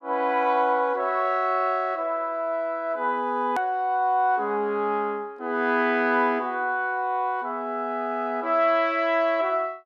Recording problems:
edit click; at 3.5 s

